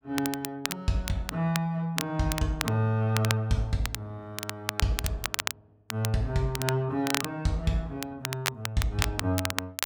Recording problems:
crackling; vinyl, SNR 4 dB

